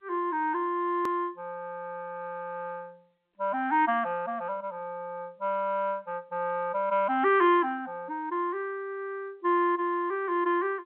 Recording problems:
telephone audio; 280 Hz to 3.4 kHz, G.711
click at an edit; at 1 s

